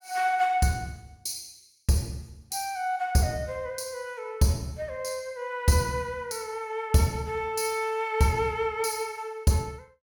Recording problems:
none

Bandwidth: 17 kHz